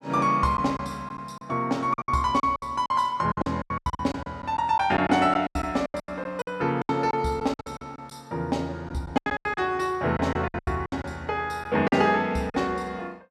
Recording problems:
lost packets; 14% of the sound replaced, filled with silence

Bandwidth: 14.5 kHz